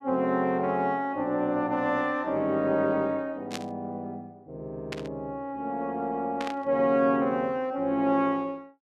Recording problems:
burst of static; at 3.5 s, at 5 s and at 6.5 s; peak -4 dB vs average level

